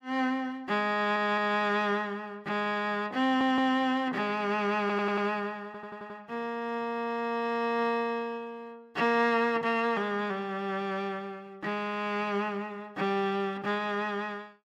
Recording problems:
audio stuttering; 4 times, first at 1 s

